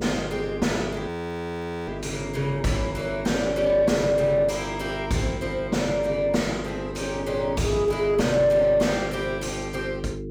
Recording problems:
distortion; soft clipping, signal-to-distortion ratio 9 dB
hum; 50 Hz, harmonics up to 450 Hz, SNR 9 dB
frozen audio; at 1 s for 1 s

